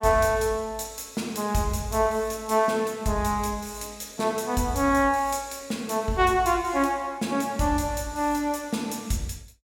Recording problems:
none

